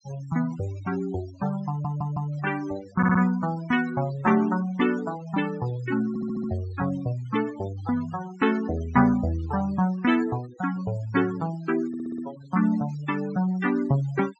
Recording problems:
treble cut off; nothing above 8 kHz
noise reduction artefacts; signal-to-artefact ratio 18 dB
stutter; 4 times, first at 1.5 s

